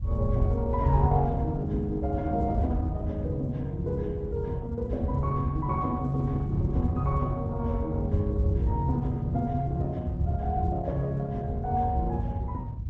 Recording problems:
lossy compression; Opus, log-spectral distance 2 dB
rumble; below 96 Hz, SNR 2 dB
wind noise; below 120 Hz, SNR 10 dB

